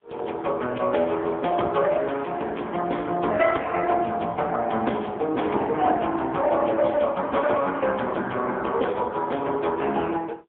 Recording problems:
phone line; 260 Hz to 3.4 kHz, AMR-NB, then MP3

